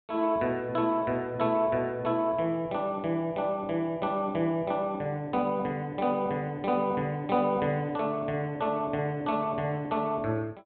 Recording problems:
treble cut off; nothing above 4 kHz

